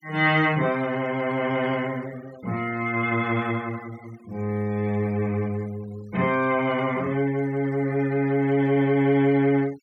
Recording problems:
noise reduction artefacts; signal-to-artefact ratio 24 dB

